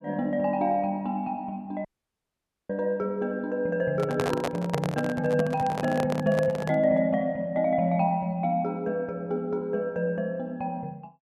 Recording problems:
dropout; at 2 s for 1 s
microphone handling noise; from 4 to 7 s; peak +2 dB vs average level

